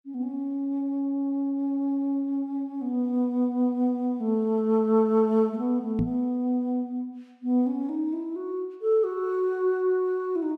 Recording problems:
microphone thump; at 6 s; peak +2 dB vs average level

